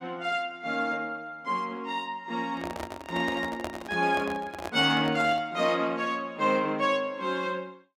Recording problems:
microphone handling noise; from 2.5 to 5.5 s; peak -2 dB vs average level

